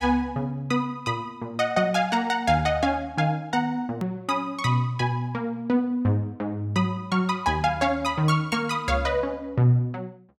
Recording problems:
click at an edit; at 4 s

